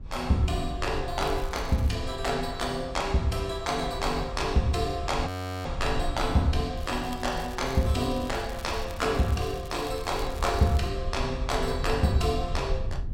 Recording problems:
low-frequency rumble; below 82 Hz, SNR 9 dB
crackle; at 1 s and from 7 to 11 s; loose cable, SNR 19 dB
audio freezing; at 5.5 s

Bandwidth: 16 kHz